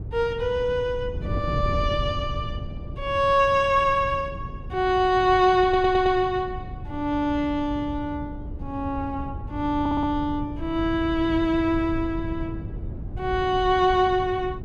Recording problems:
wind on the microphone; below 140 Hz, SNR 11 dB
stutter; at 5.5 s and at 10 s

